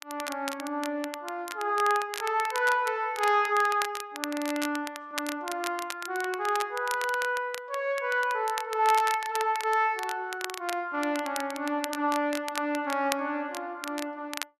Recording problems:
crackling; vinyl, SNR 11 dB

